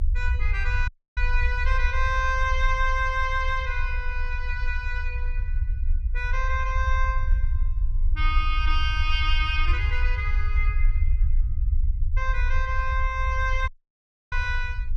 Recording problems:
low-frequency rumble; below 62 Hz, strongest tone 26 Hz, SNR -1 dB
dropout; at 1 s and at 14 s for 0.5 s

